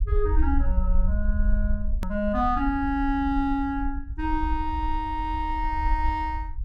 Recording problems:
rumble; below 58 Hz, SNR 2 dB
edit click; at 2 s

